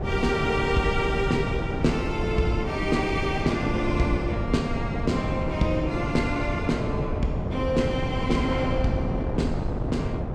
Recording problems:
wind noise; below 340 Hz, SNR 2 dB

